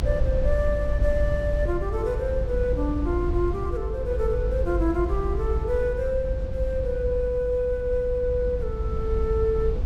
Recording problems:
low-frequency rumble; below 70 Hz, strongest tone 50 Hz, SNR 2 dB

